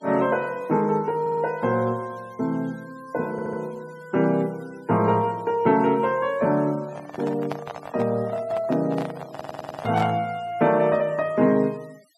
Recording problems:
denoising artefacts; signal-to-artefact ratio 26 dB
stutter; at 1 s, at 3.5 s and at 9.5 s
microphone handling noise; from 7 to 10 s; peak -3 dB vs average level

